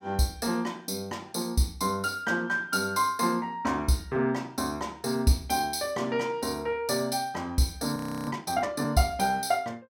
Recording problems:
frozen audio; at 8 s

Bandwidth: 16.5 kHz